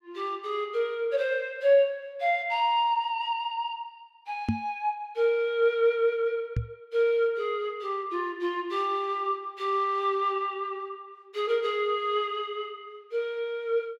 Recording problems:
microphone thump; at 4.5 s and at 6.5 s; peak +5 dB vs average level

